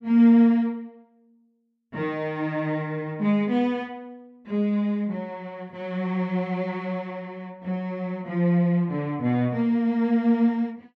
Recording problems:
none

